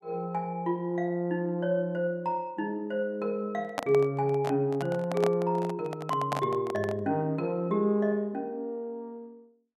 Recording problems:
microphone handling noise; from 3.5 to 7 s; peak +3 dB vs average level

